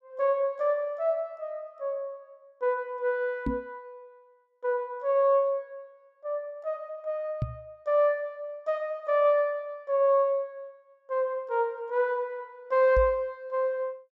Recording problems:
microphone thump; at 3.5 s, at 7.5 s and at 13 s; peak +2 dB vs average level

